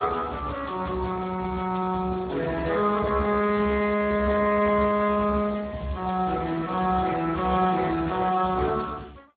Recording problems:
lossy codec; AAC, then Speex, log-spectral distance 6 dB, nothing above 3.9 kHz

